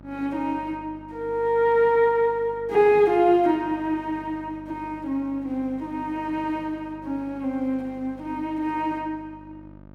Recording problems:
mains hum; 50 Hz, harmonics up to 1.3 kHz, SNR 22 dB

